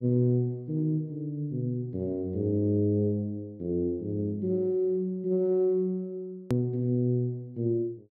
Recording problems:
click at an edit; at 6.5 s

